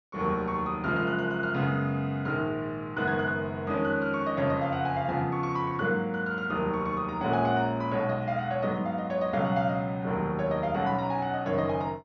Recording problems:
low-pass filter; nothing above 6.5 kHz

